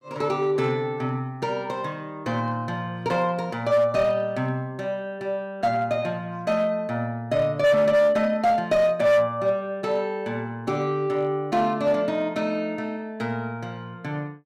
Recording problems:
distorted audio; hard clipping, uneven, signal-to-distortion ratio 12 dB

